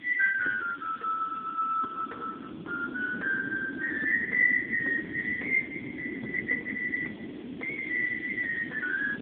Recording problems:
telephone audio; 990 Hz to 2.9 kHz, AMR-NB
background hiss; SNR 27 dB
wind noise; below 360 Hz, SNR 11 dB

